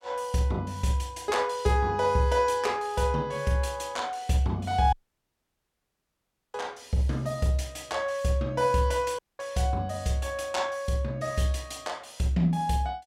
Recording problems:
dropout; at 5 s for 1.5 s and at 9 s

